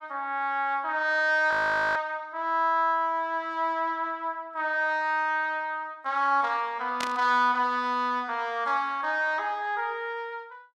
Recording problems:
audio freezing; at 1.5 s
burst of static; at 7 s; peak -2 dB vs average level

